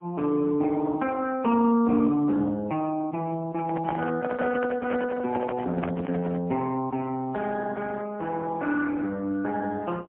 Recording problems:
telephone audio; 190 Hz to 3.5 kHz, AMR-NB, then MP3
handling noise; from 3.5 to 6.5 s; peak -1 dB vs average level

